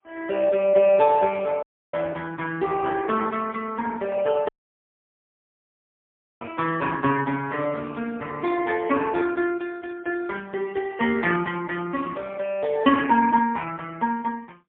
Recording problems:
phone line; 150 Hz to 3.5 kHz, AMR-NB, then MP3
dropout; at 1.5 s and at 4.5 s for 2 s

